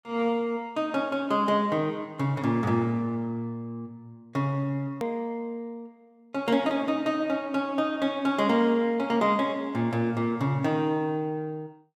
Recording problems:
hard cut with a click; at 5 s

